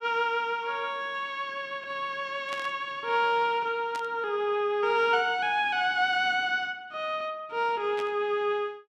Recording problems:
burst of static; at 2.5 s, at 4 s and at 8 s; peak -8 dB vs average level

